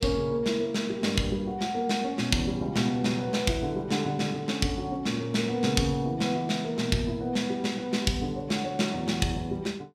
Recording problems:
none

